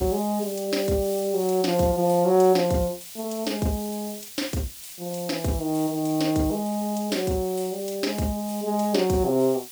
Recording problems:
background hiss; SNR 13 dB

